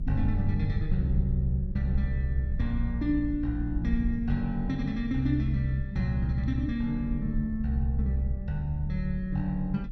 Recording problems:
low-frequency rumble; below 72 Hz, SNR 7 dB

